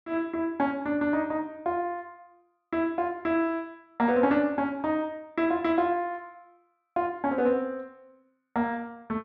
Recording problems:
none

